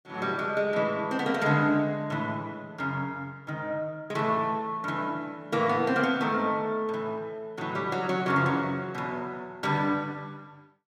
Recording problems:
none

